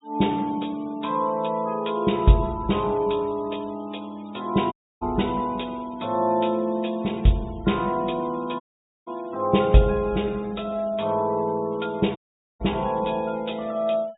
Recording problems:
treble cut off; nothing above 4 kHz
noise reduction artefacts; signal-to-artefact ratio 26 dB
dropout; at 4.5 s, at 8.5 s and at 12 s

